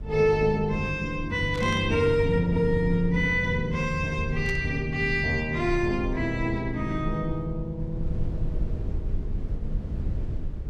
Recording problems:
low-frequency rumble; below 90 Hz, SNR 9 dB
static burst; at 1.5 s and at 4.5 s; peak -10 dB vs average level

